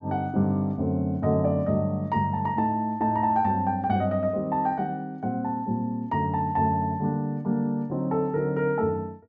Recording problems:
low-pass filter; nothing above 8 kHz

